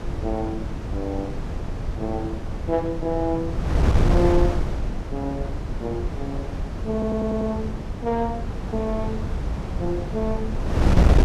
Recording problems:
wind noise; below 190 Hz, SNR -1 dB
stutter; at 7 s

